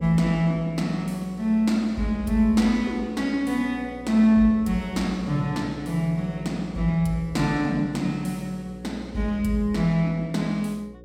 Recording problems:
electrical hum; 60 Hz, harmonics up to 540 Hz, SNR 19 dB

